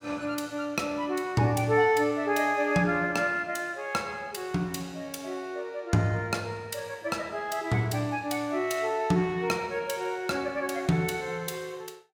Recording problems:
none

